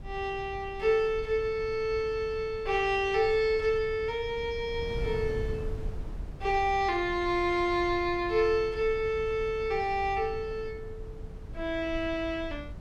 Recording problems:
wind noise; below 110 Hz, SNR 13 dB

